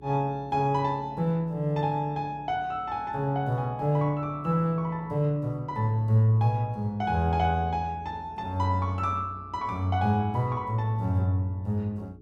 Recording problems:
hum; 60 Hz, harmonics up to 420 Hz, SNR 24 dB

